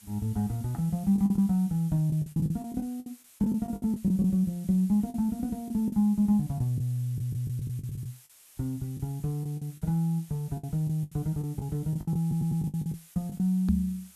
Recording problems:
hiss; slope +2 dB per octave, SNR 23 dB
packet loss; 11% of the sound replaced, filled with the last packet
stutter; at 7 s and at 12 s
knock on the microphone; at 14 s; peak +5 dB vs average level

